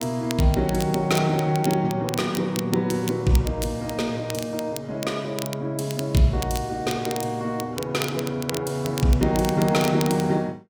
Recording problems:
crackling; vinyl, SNR 12 dB

